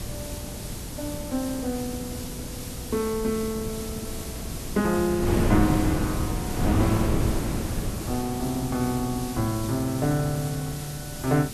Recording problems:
hum; 60 Hz, harmonics up to 480 Hz, SNR 20 dB
background hiss; slope +3 dB per octave, SNR 10 dB
wind on the microphone; below 330 Hz, SNR 3 dB

